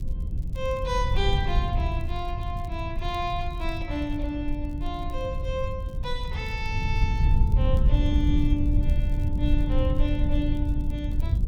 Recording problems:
rumble; below 84 Hz, SNR -4 dB
crackling; vinyl, SNR 28 dB

